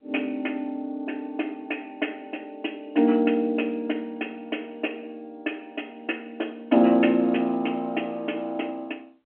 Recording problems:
telephone audio; 240 Hz to 3.1 kHz, G.711

